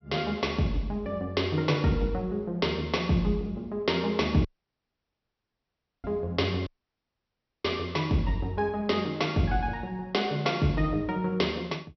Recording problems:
low-pass filter; nothing above 5.8 kHz
dropout; at 4.5 s for 1.5 s and at 6.5 s for 1 s

